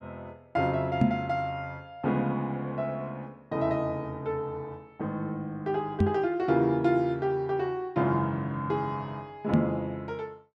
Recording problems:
microphone bump; at 1 s, at 6 s and at 9.5 s; peak +9 dB vs average level

